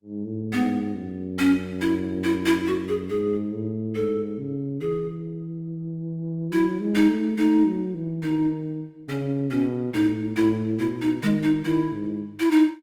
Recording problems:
lossy compression; Opus, log-spectral distance 2 dB, nothing above 19 kHz

